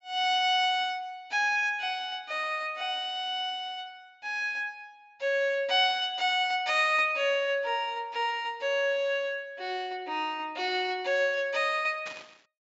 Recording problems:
low-pass filter; nothing above 8 kHz
static burst; at 12 s; peak -9 dB vs average level

